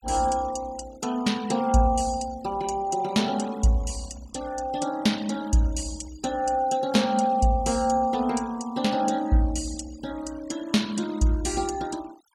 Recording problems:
denoising artefacts; signal-to-artefact ratio 19 dB

